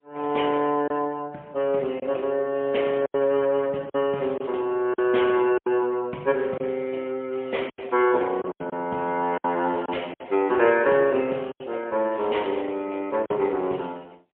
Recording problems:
telephone audio; 240 Hz to 3.3 kHz, AMR-NB, then MP3
packet loss; 6% of the sound replaced, filled with silence

